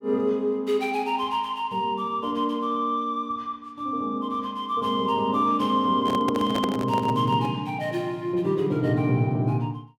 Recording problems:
handling noise; from 6 to 7.5 s; peak +1 dB vs average level

